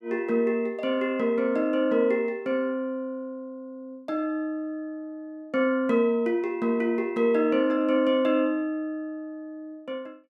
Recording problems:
none

